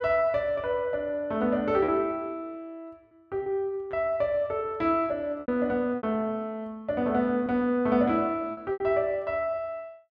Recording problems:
packet loss; 4% of the sound replaced, filled with repeated pitch periods

